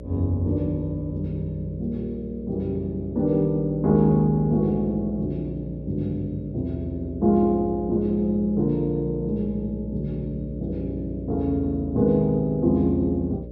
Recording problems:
hum; 60 Hz, harmonics up to 600 Hz, SNR 12 dB

